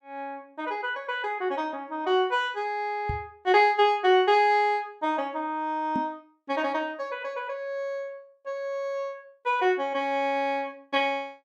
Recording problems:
knock on the microphone; at 3 s and at 6 s; peak -1 dB vs average level

